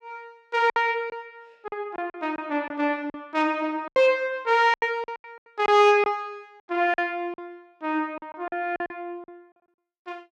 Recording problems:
packet loss; 11% of the sound replaced, filled with silence

